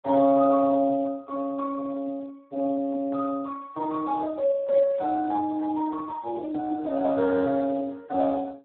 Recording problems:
phone line; 190 Hz to 2.2 kHz, Speex

